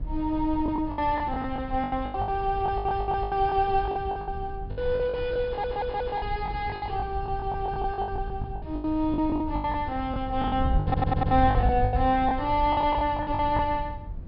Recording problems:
treble missing; nothing above 5.5 kHz
wind noise; below 110 Hz, SNR 7 dB
lost packets; 18% of the sound replaced, filled with the last packet
stutter; at 2.5 s, at 5.5 s and at 11 s

